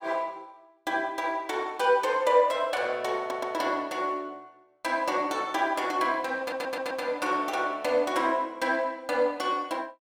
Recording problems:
audio stuttering; at 3 s and at 6.5 s

